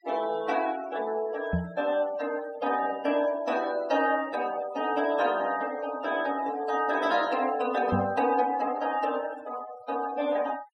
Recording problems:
noise reduction artefacts; signal-to-artefact ratio 17 dB
microphone thump; at 1.5 s and at 8 s; peak +4 dB vs average level

